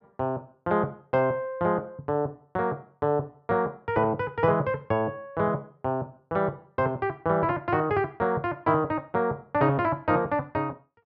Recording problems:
none

